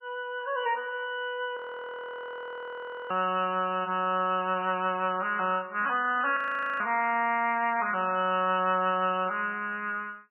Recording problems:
lossy codec; MP3, log-spectral distance 3 dB, nothing above 2.6 kHz
audio freezing; at 1.5 s for 1.5 s and at 6.5 s

